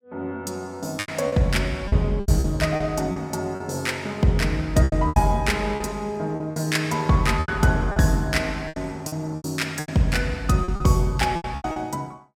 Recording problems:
packet loss; 11% of the sound replaced, filled with repeated pitch periods

